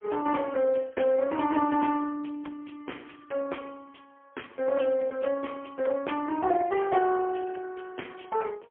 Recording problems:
phone line; 260 Hz to 3.2 kHz, AMR-NB, then MP3

